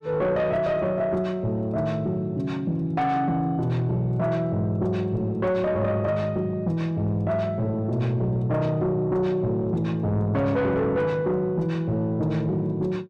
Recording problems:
distorted audio; soft clipping, signal-to-distortion ratio 10 dB

